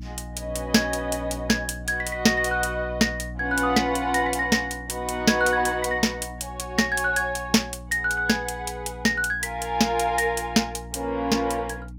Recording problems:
hum; 60 Hz, harmonics up to 300 Hz, SNR 15 dB

